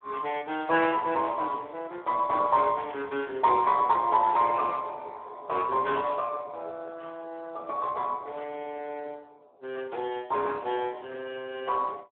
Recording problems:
telephone audio; 280 Hz to 3.7 kHz, Speex

